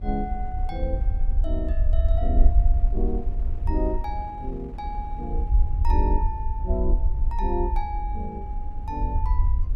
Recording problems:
rumble; below 60 Hz, SNR -6 dB
wind on the microphone; below 330 Hz, SNR 13 dB

